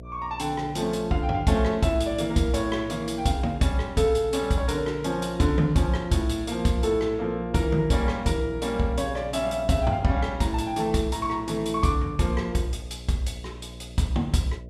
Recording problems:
electrical hum; 60 Hz, harmonics up to 660 Hz, SNR 16 dB

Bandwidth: 14.5 kHz